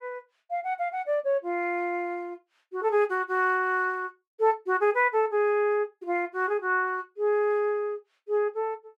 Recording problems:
none

